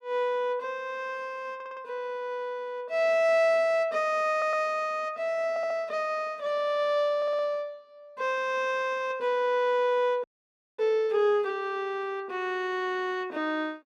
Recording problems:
stutter; 4 times, first at 1.5 s
audio freezing; at 10 s for 0.5 s

